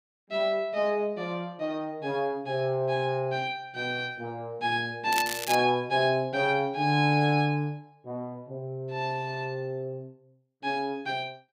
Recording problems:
crackle; at 5 s; loose cable, SNR 6 dB

